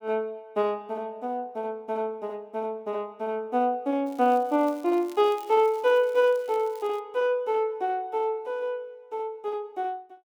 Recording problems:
crackling; from 4 to 7 s; loose cable, SNR 26 dB

